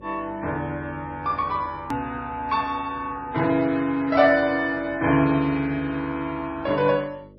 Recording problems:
lossy codec; MP3, log-spectral distance 2 dB, nothing above 13.7 kHz
hum; 50 Hz, harmonics up to 600 Hz, SNR 24 dB
edit click; at 2 s

